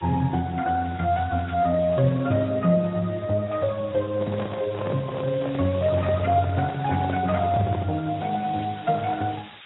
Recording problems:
lossy codec; Speex, then AAC, log-spectral distance 13 dB, nothing above 3.8 kHz
background hiss; SNR 20 dB
handling noise; from 4 to 8 s; peak -4 dB vs average level

